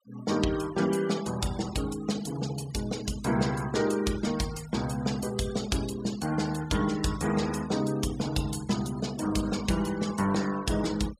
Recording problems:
denoising artefacts; signal-to-artefact ratio 14 dB

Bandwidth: 15 kHz